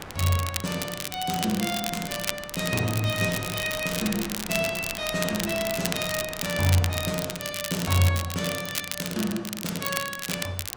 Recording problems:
wind on the microphone; below 1.7 kHz, SNR 15 dB
crackle; vinyl, SNR 4 dB

